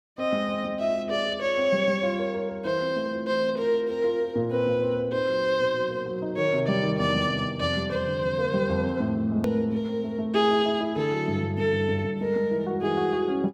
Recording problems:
edit click; at 9.5 s

